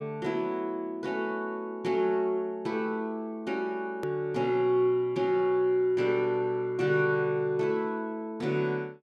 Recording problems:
hard cut with a click; at 4 s

